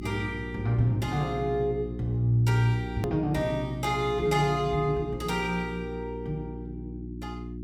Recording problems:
hum; 60 Hz, harmonics up to 360 Hz, SNR 9 dB
edit click; at 3 s

